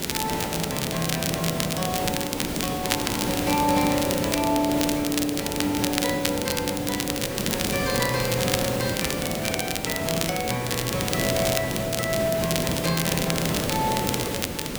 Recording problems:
background hiss; SNR 2 dB
crackling; vinyl, SNR 2 dB

